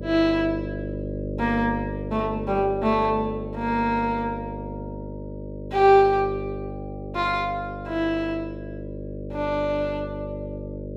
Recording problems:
hum; 50 Hz, harmonics up to 600 Hz, SNR 9 dB

